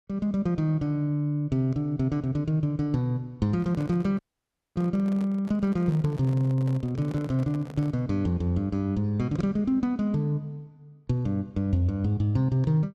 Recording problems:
microphone handling noise; from 3.5 to 8 s; peak -11 dB vs average level
dropout; at 4 s for 0.5 s

